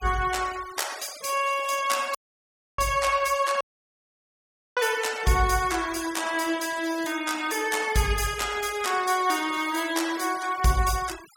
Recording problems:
denoising artefacts; signal-to-artefact ratio 15 dB
dropout; at 2 s for 0.5 s and at 3.5 s for 1 s

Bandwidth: 17 kHz